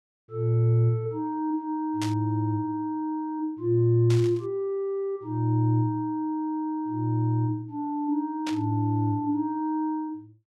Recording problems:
burst of static; at 2 s, at 4 s and at 8.5 s; peak -4 dB vs average level

